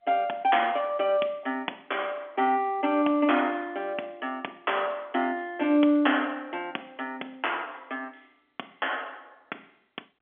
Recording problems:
telephone audio; 220 Hz to 3.4 kHz, G.711

